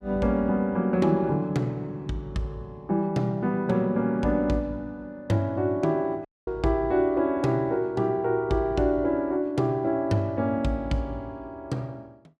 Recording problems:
audio cutting out; at 6.5 s

